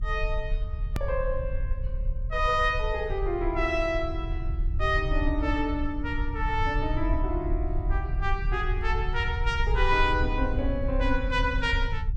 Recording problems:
low-frequency rumble; below 66 Hz, SNR 3 dB
edit click; at 1 s

